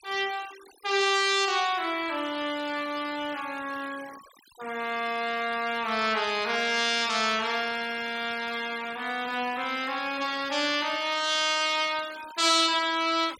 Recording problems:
denoising artefacts; signal-to-artefact ratio 17 dB

